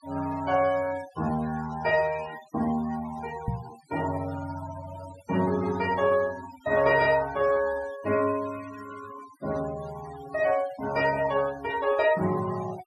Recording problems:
denoising artefacts; signal-to-artefact ratio 17 dB
microphone bump; at 3.5 s; peak +1 dB vs average level

